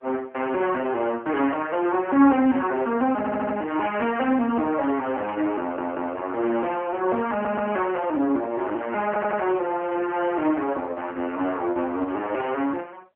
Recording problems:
phone line; 220 Hz to 3.1 kHz, AMR-NB
static burst; at 1 s and at 5.5 s; peak -14 dB vs average level
stutter; 4 times, first at 3 s

